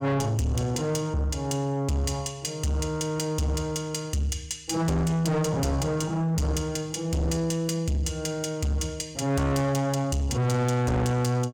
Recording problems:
distorted audio; soft clipping, signal-to-distortion ratio 6 dB

